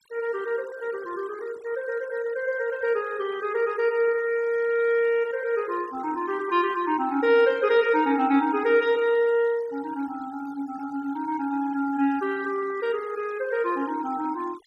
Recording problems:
denoising artefacts; signal-to-artefact ratio 22 dB

